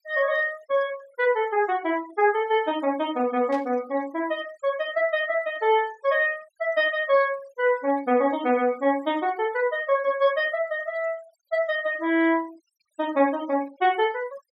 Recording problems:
noise reduction artefacts; signal-to-artefact ratio 23 dB
burst of static; at 3.5 s; peak -14 dB vs average level

